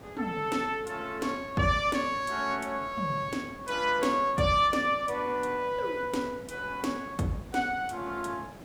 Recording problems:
background hiss; slope -7 dB per octave, SNR 19 dB

